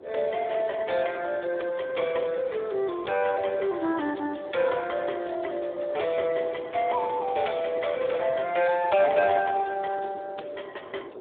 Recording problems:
phone line; 260 Hz to 3.5 kHz, Speex
wind on the microphone; below 560 Hz, SNR 18 dB

